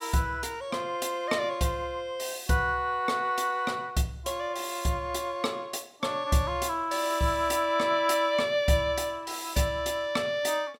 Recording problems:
none

